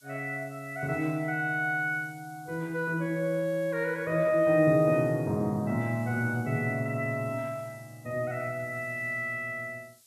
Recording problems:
background hiss; SNR 27 dB

